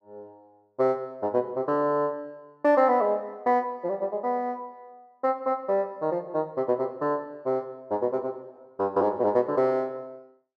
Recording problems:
none

